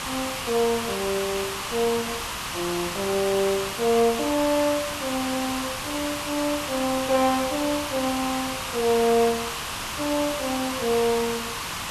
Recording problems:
background hiss; SNR 4 dB

